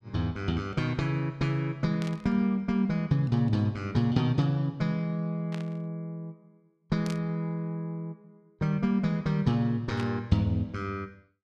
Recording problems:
static burst; 4 times, first at 2 s; peak -8 dB vs average level

